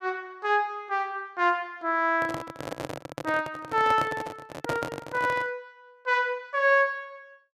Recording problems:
handling noise; from 2 to 5.5 s; peak +1 dB vs average level

